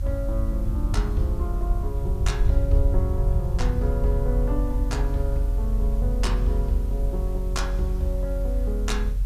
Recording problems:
background hiss; slope -3 dB per octave, SNR 21 dB
low-frequency rumble; below 62 Hz, strongest tone 44 Hz, SNR -4 dB

